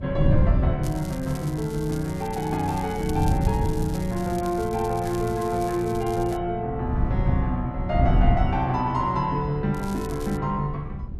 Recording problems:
wind on the microphone; below 120 Hz, SNR 3 dB
crackle; from 1 to 6.5 s and at 9.5 s; loose cable, SNR 18 dB

